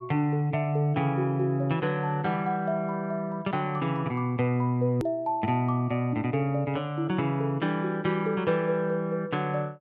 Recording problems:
edit click; at 5 s

